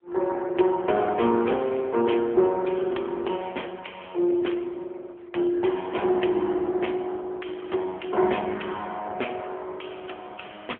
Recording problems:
phone line; 280 Hz to 3.3 kHz, AMR-NB

